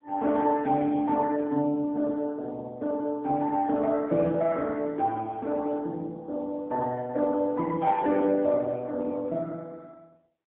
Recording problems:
phone line; 150 Hz to 3.2 kHz, AMR-NB, then MP3

